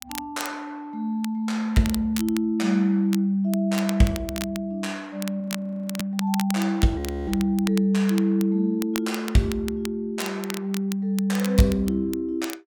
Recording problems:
crackling; vinyl, SNR 13 dB
audio freezing; at 5.5 s for 0.5 s and at 7 s

